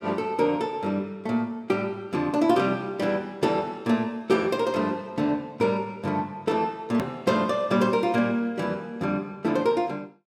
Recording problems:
edit click; at 7 s

